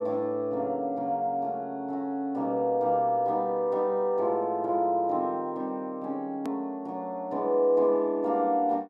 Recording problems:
edit click; at 6.5 s

